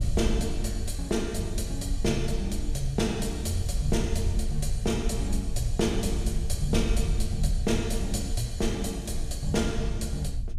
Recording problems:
low-frequency rumble; below 72 Hz, SNR 2 dB

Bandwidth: 15.5 kHz